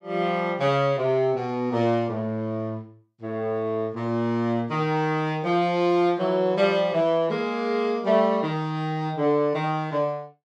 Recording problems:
none

